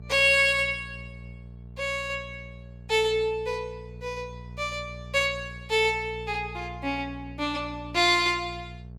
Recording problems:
mains hum; 60 Hz, harmonics up to 660 Hz, SNR 17 dB

